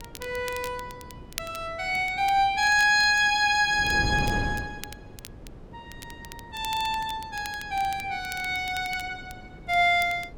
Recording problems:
wind noise; below 330 Hz, SNR 16 dB
crackling; vinyl, SNR 20 dB

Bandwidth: 17 kHz